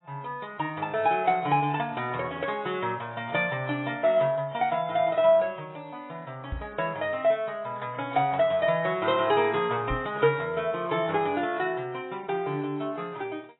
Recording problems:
codec artefacts; AAC, log-spectral distance 3 dB, nothing above 3.8 kHz
microphone thump; at 6.5 s and at 10 s; peak -3 dB vs average level

